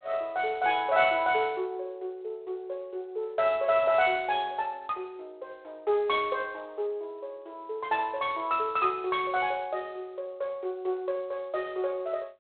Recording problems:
telephone audio; 340 Hz to 3.9 kHz, G.726

